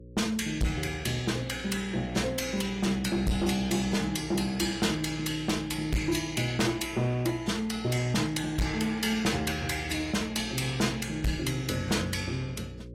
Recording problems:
lossy compression; AAC, log-spectral distance 4 dB
distorted audio; hard clipping, signal-to-distortion ratio 6 dB
electrical hum; 60 Hz, harmonics up to 540 Hz, SNR 16 dB

